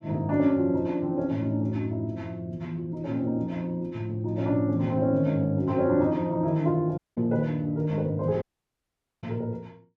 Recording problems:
dropout; at 7 s and at 8.5 s for 1 s

